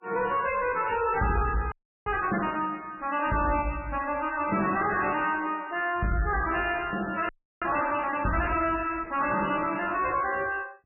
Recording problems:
lossy compression; MP3, log-spectral distance 5 dB, nothing above 2.8 kHz
distorted audio; soft clipping, signal-to-distortion ratio 9 dB
frozen audio; at 1.5 s and at 7.5 s

